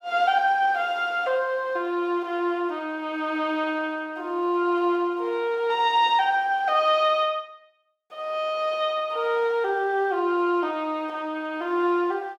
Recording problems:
none

